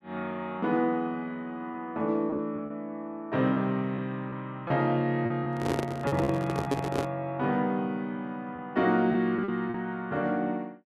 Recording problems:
lost packets; 5% of the sound replaced, filled with repeated pitch periods
microphone handling noise; from 5.5 to 7 s; peak +5 dB vs average level

